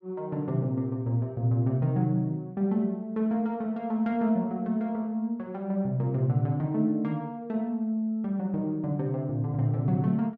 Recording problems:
none

